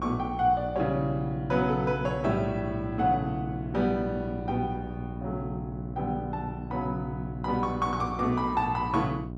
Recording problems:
hum; 60 Hz, harmonics up to 1.1 kHz, SNR 8 dB

